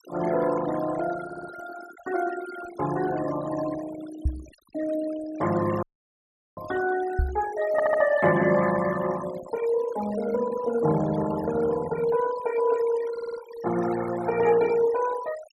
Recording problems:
noise reduction artefacts; signal-to-artefact ratio 14 dB
stutter; at 1.5 s, at 7.5 s and at 13 s
microphone bump; at 4.5 s and at 7 s; peak +4 dB vs average level
dropout; at 6 s for 0.5 s

